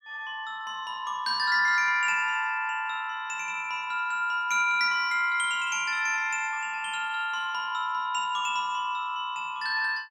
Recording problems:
none

